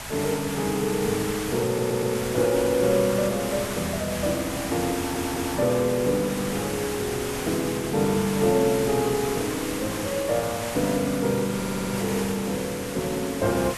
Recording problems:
hiss; SNR 7 dB
stutter; at 1.5 s, at 5 s and at 12 s

